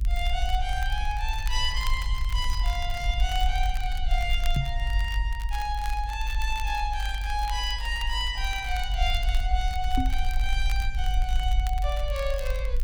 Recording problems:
low-frequency rumble; below 50 Hz, SNR -1 dB
crackling; vinyl, SNR 15 dB
microphone thump; at 4.5 s and at 10 s; peak +7 dB vs average level

